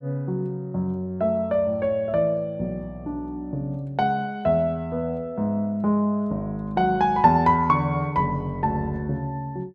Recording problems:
none

